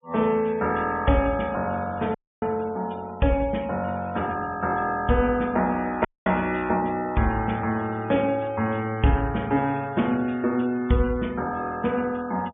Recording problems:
low-pass filter; nothing above 3.5 kHz
denoising artefacts; signal-to-artefact ratio 24 dB
dropout; at 2 s and at 6 s

